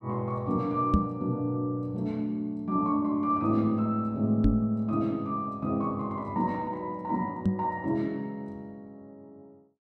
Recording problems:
microphone thump; at 1 s, at 4.5 s and at 7.5 s; peak +8 dB vs average level

